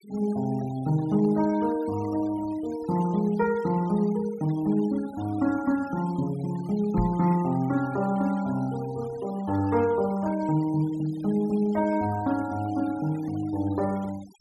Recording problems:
noise reduction artefacts; signal-to-artefact ratio 21 dB
microphone bump; at 7 s; peak +1 dB vs average level

